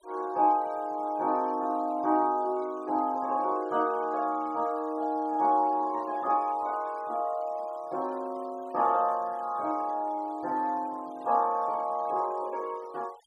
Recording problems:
noise reduction artefacts; signal-to-artefact ratio 27 dB

